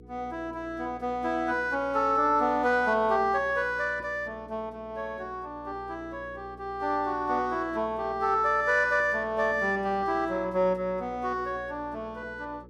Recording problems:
hum; 60 Hz, harmonics up to 480 Hz, SNR 21 dB

